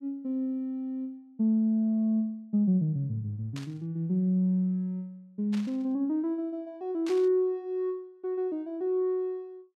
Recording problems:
burst of static; at 3.5 s, at 5.5 s and at 7 s; peak -10 dB vs average level

